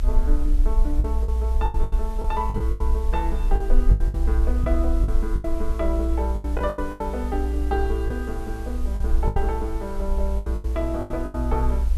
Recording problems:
hiss; slope -4 dB per octave, SNR 18 dB
low-frequency rumble; below 60 Hz, SNR -4 dB
lost packets; 12% of the sound replaced, filled with the last packet

